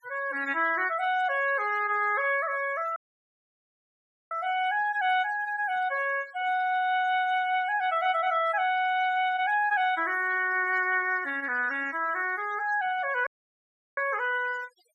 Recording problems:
noise reduction artefacts; signal-to-artefact ratio 21 dB
dropout; at 3 s for 1.5 s and at 13 s for 0.5 s

